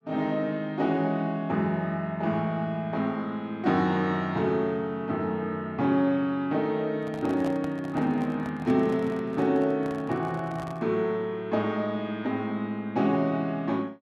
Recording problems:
microphone handling noise; from 7 to 11 s; peak -7 dB vs average level

